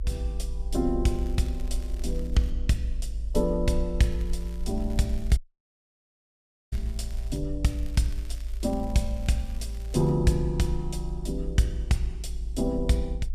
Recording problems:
rumble; below 54 Hz, SNR 6 dB
crackle; from 1 to 2.5 s, from 4 to 7.5 s and from 7.5 to 10 s; loose cable, SNR 25 dB
dropout; at 5.5 s for 1.5 s

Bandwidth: 14.5 kHz